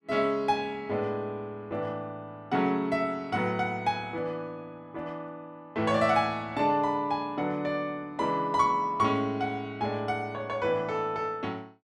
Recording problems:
none

